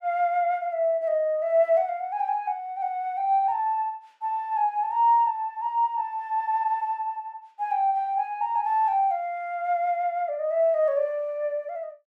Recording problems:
none

